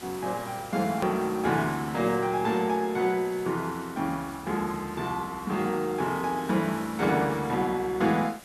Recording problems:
hiss; slope -3 dB per octave, SNR 18 dB
click at an edit; at 1 s

